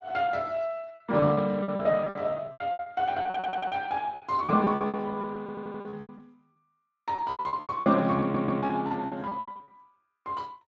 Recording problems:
lossy compression; Speex, log-spectral distance 3 dB
packet loss; 22% of the sound replaced, filled with repeated pitch periods
stutter; at 3.5 s, at 5.5 s and at 8 s

